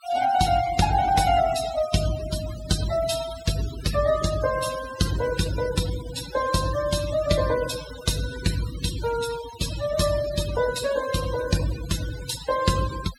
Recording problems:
noise reduction artefacts; signal-to-artefact ratio 11 dB

